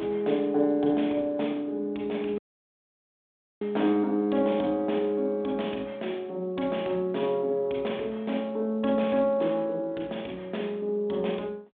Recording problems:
telephone audio; 220 Hz to 3.7 kHz, G.726
dropout; at 2.5 s for 1 s

